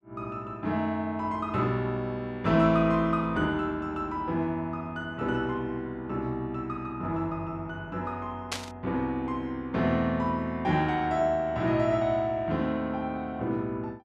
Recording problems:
burst of static; at 8.5 s; peak +2 dB vs average level

